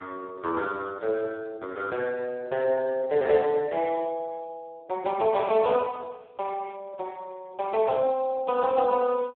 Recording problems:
telephone audio; 340 Hz to 2.7 kHz, Speex

